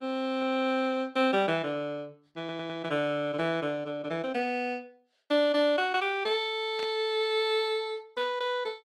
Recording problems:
codec artefacts; Opus, log-spectral distance 2 dB, nothing above 16.6 kHz
audio stuttering; at 2.5 s
static burst; at 7 s; peak -10 dB vs average level

